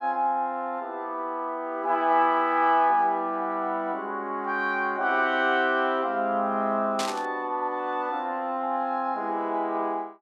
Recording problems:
static burst; at 7 s; peak -1 dB vs average level

